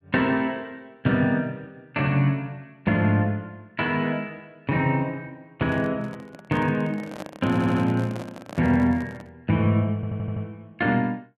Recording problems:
microphone handling noise; from 5.5 to 9.5 s; peak -8 dB vs average level
audio stuttering; at 7.5 s and at 10 s

